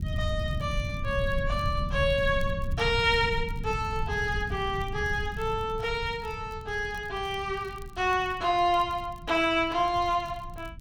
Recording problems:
low-frequency rumble; below 120 Hz, SNR 8 dB
crackling; vinyl, SNR 30 dB

